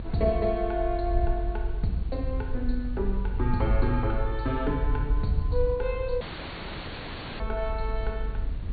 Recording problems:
low-pass filter; nothing above 4.5 kHz
hiss; SNR 20 dB
rumble; below 58 Hz, SNR 2 dB
wind noise; below 110 Hz, SNR 14 dB
dropout; at 6 s for 1 s

